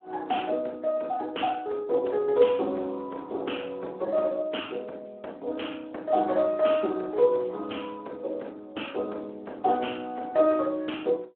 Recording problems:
phone line; 240 Hz to 3.3 kHz, Speex

